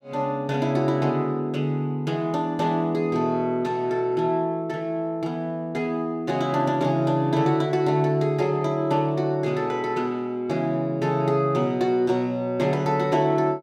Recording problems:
none

